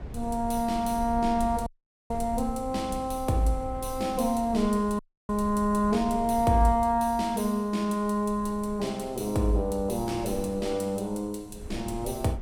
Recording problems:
rumble; below 98 Hz, SNR 15 dB
dropout; at 1.5 s and at 5 s

